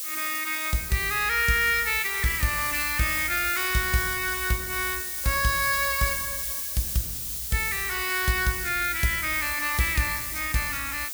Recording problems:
hiss; SNR 4 dB

